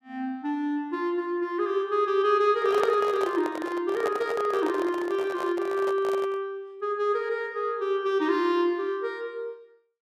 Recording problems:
handling noise; from 2.5 to 6.5 s; peak +1 dB vs average level

